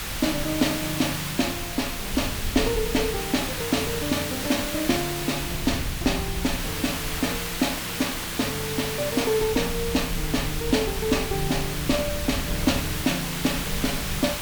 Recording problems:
hiss; slope 0 dB per octave, SNR 3 dB
rumble; below 90 Hz, SNR 11 dB

